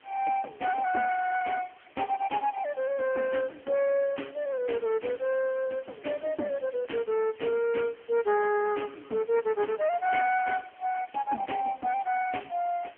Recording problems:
phone line; 260 Hz to 2.2 kHz, AMR-NB
background hiss; SNR 27 dB

